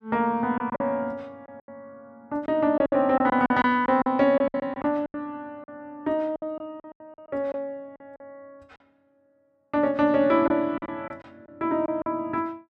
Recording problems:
lost packets; 11% of the sound replaced, filled with silence

